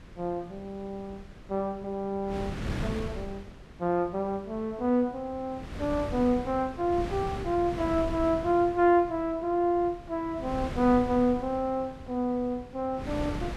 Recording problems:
wind on the microphone; below 400 Hz, SNR 11 dB

